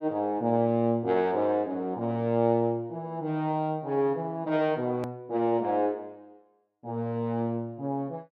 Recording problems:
click at an edit; at 5 s

